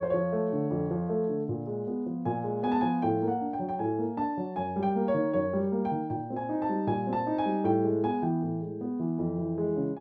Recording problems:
none

